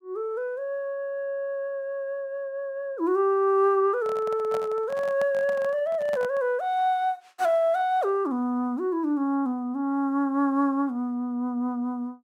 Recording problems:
microphone handling noise; from 4 to 6.5 s; peak -5 dB vs average level

